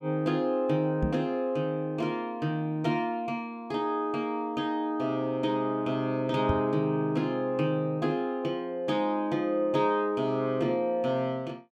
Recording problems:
knock on the microphone; at 1 s and at 6.5 s; peak +3 dB vs average level

